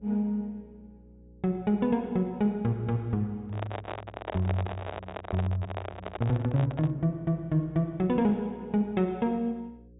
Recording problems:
treble missing; nothing above 4 kHz
electrical hum; 60 Hz, harmonics up to 540 Hz, SNR 25 dB
handling noise; from 3.5 to 7 s; peak -1 dB vs average level

